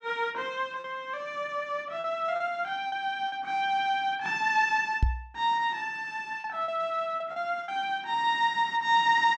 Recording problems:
lost packets; 4% of the sound replaced, filled with repeated pitch periods
microphone thump; at 5 s; peak +7 dB vs average level

